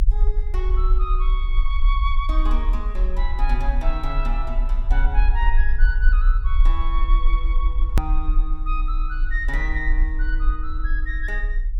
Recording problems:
rumble; below 42 Hz, strongest tone 30 Hz, SNR -8 dB
hard cut with a click; at 8 s

